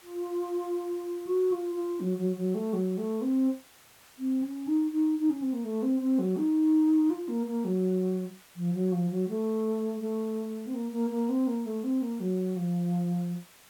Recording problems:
hiss; slope -1 dB per octave, SNR 25 dB

